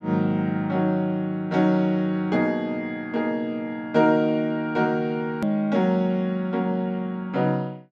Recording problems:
edit click; at 5.5 s

